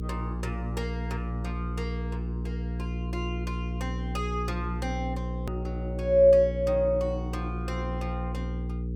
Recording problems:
hum; 60 Hz, harmonics up to 480 Hz, SNR 4 dB
hard cut with a click; at 5.5 s

